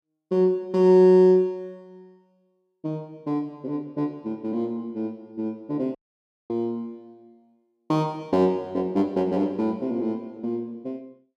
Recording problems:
audio cutting out; at 6 s for 0.5 s

